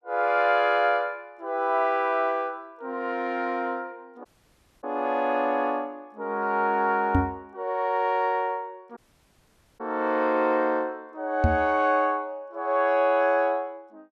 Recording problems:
dropout; at 4.5 s for 0.5 s and at 9 s for 1 s
knock on the microphone; at 7 s and at 11 s; peak +6 dB vs average level

